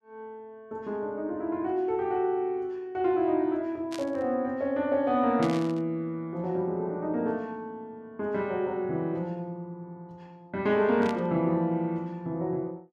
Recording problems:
static burst; at 4 s, at 5.5 s and at 11 s; peak -6 dB vs average level

